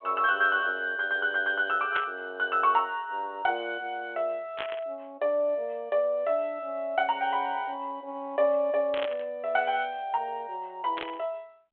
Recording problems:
telephone audio; 340 Hz to 3.6 kHz, G.726
static burst; 4 times, first at 2 s; peak -1 dB vs average level

